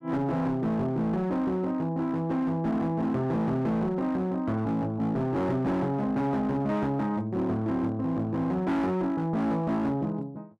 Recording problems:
distorted audio; hard clipping, uneven, signal-to-distortion ratio 10 dB

